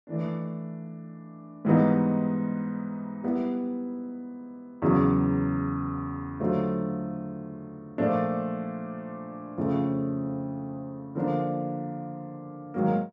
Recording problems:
none

